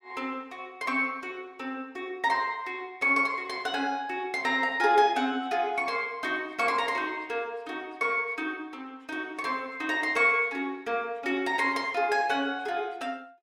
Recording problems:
none

